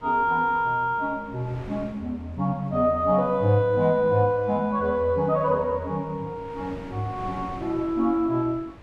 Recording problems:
wind noise; below 690 Hz, SNR 20 dB

